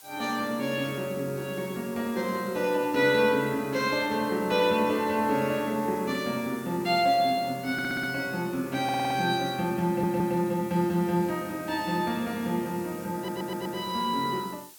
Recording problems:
background hiss; slope +1 dB per octave, SNR 19 dB
stutter; 4 times, first at 7.5 s

